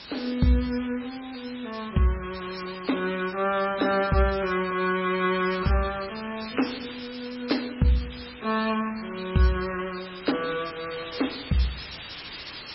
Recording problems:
codec artefacts; MP3, log-spectral distance 21 dB, nothing above 5.5 kHz
background hiss; SNR 12 dB

